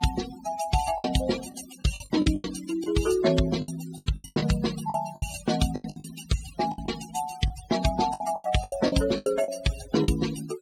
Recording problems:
denoising artefacts; signal-to-artefact ratio 11 dB
lost packets; 14% of the sound replaced, filled with the last packet

